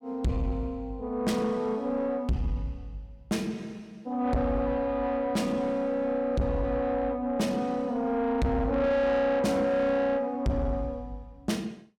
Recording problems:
distortion; soft clipping, signal-to-distortion ratio 7 dB

